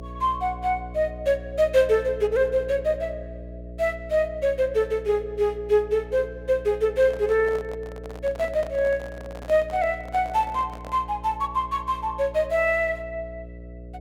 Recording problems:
electrical hum; 60 Hz, harmonics up to 660 Hz, SNR 16 dB
microphone handling noise; from 7 to 11 s; peak -11 dB vs average level

